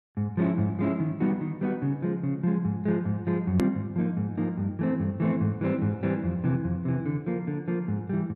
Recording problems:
hard cut with a click; at 3.5 s

